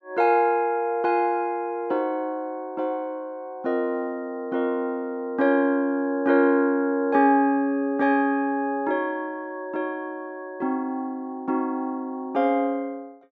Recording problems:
none

